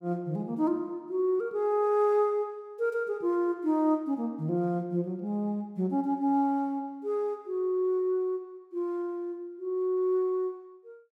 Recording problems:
none

